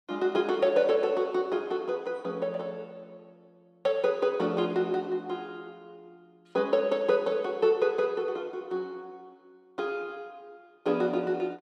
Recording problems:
none

